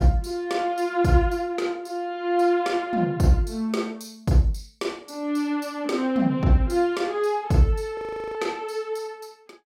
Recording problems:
audio freezing; at 8 s

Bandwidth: 16 kHz